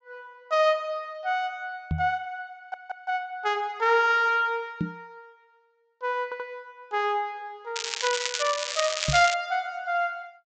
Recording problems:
treble missing; nothing above 8 kHz
microphone thump; at 2 s, at 5 s and at 9 s; peak +2 dB vs average level
stutter; at 2.5 s and at 6 s
crackle; from 8 to 9.5 s; loose cable, SNR 3 dB

